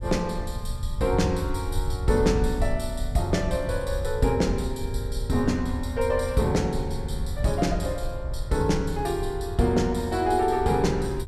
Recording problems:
rumble; below 78 Hz, SNR 7 dB

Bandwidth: 14 kHz